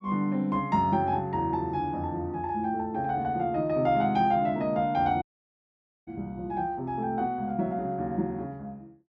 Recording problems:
audio cutting out; at 5 s for 1 s

